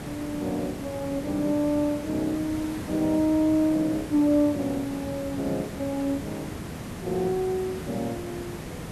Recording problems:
hiss; slope -6 dB per octave, SNR 10 dB

